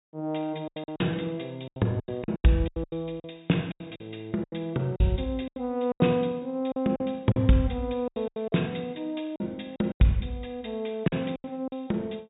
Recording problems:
treble missing; nothing above 4 kHz
lost packets; 14% of the sound replaced, filled with silence

